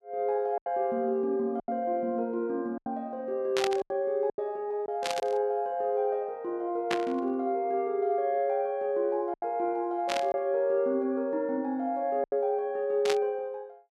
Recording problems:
packet loss; 5% of the sound replaced, filled with silence
burst of static; 5 times, first at 3.5 s; peak +3 dB vs average level

